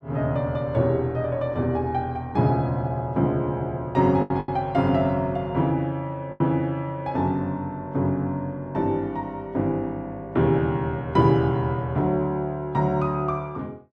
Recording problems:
packet loss; 1.7% of the sound replaced, filled with the last packet

